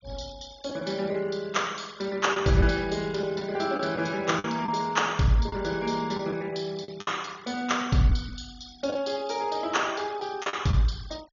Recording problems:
treble missing; nothing above 6.7 kHz
denoising artefacts; signal-to-artefact ratio 23 dB
lost packets; 5% of the sound replaced, filled with the last packet

